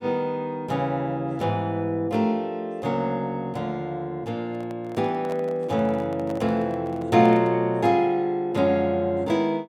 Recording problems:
handling noise; from 4.5 to 7.5 s; peak -10 dB vs average level

